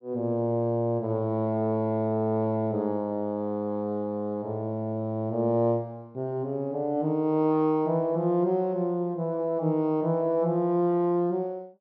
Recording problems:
treble cut off; nothing above 5.8 kHz

